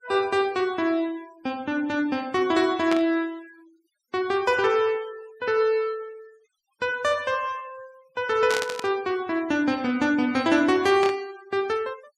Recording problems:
denoising artefacts; signal-to-artefact ratio 24 dB
static burst; at 3 s, at 8.5 s and at 11 s; peak -1 dB vs average level

